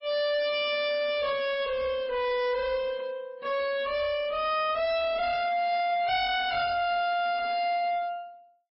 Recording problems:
lossy compression; MP3, log-spectral distance 2 dB, nothing above 5.2 kHz
distortion; hard clipping, uneven, signal-to-distortion ratio 6 dB

